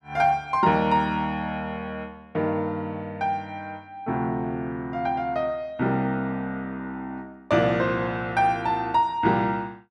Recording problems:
none

